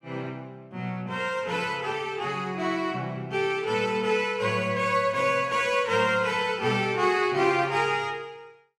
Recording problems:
none

